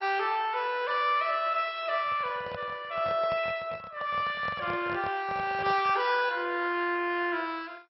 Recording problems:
lossy codec; MP2, log-spectral distance 4 dB, nothing above 5.5 kHz
handling noise; from 2 to 6 s; peak -7 dB vs average level

